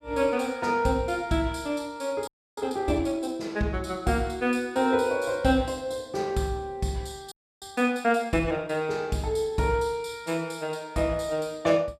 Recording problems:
frozen audio; at 2.5 s and at 7.5 s

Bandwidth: 14.5 kHz